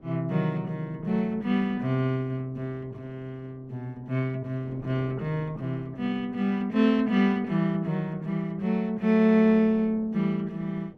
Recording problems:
wind noise; below 430 Hz, SNR 24 dB

